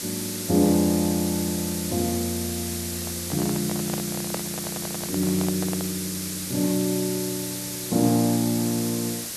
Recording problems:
background hiss; SNR 4 dB
microphone handling noise; from 3 to 6 s; peak -2 dB vs average level
stutter; at 4.5 s

